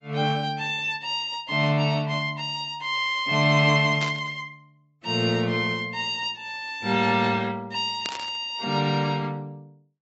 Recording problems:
treble cut off; nothing above 7.3 kHz
lossy codec; MP3, log-spectral distance 2 dB
static burst; at 4 s and at 8 s; peak -4 dB vs average level

